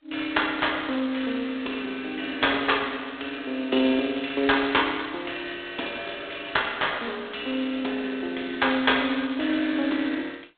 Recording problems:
phone line; 220 Hz to 3.9 kHz, G.726

